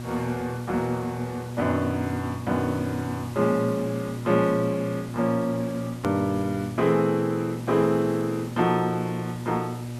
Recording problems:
hum; 60 Hz, harmonics up to 960 Hz, SNR 9 dB
background hiss; slope -3 dB per octave, SNR 19 dB
edit click; at 6 s

